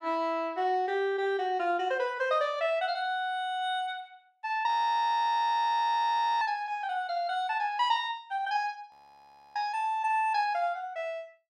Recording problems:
frozen audio; at 4.5 s for 1.5 s and at 9 s for 0.5 s

